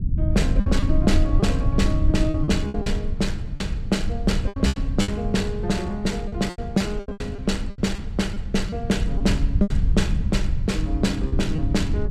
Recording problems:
low-frequency rumble; below 92 Hz, SNR 1 dB
lost packets; 10% of the sound replaced, filled with repeated pitch periods

